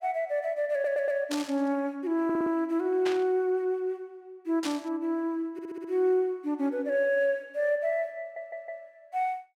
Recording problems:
stutter; 4 times, first at 0.5 s
burst of static; at 1.5 s, at 3 s and at 4.5 s; peak -3 dB vs average level

